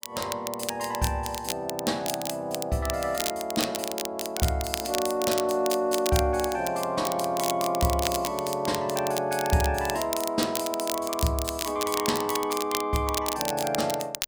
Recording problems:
crackle; vinyl, SNR 6 dB

